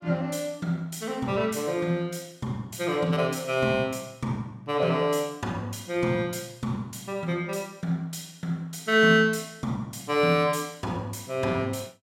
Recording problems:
none

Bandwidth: 16.5 kHz